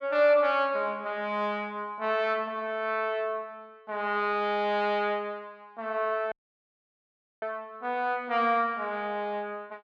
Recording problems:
audio cutting out; at 6.5 s for 1 s

